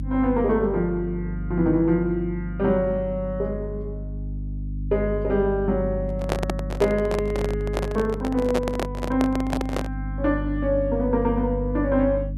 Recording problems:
hum; 50 Hz, harmonics up to 300 Hz, SNR 7 dB
microphone handling noise; from 6 to 10 s; peak +3 dB vs average level

